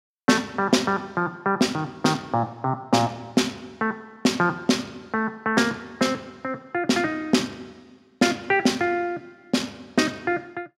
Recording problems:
none

